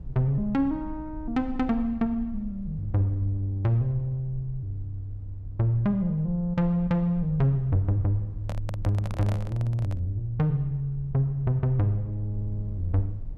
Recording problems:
rumble; below 60 Hz, strongest tone 22 Hz, SNR 15 dB
handling noise; from 8.5 to 10 s; peak -6 dB vs average level

